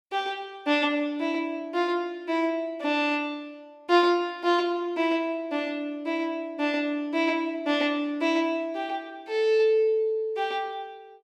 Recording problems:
none

